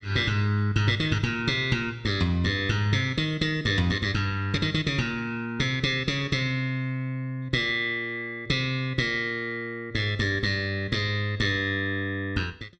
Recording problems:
none

